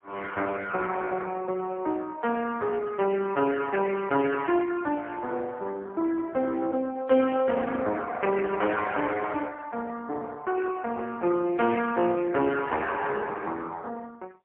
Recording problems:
phone line; 240 Hz to 3.2 kHz, AMR-NB, then MP3

